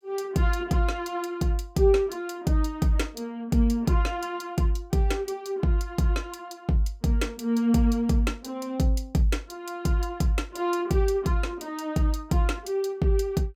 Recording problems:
none

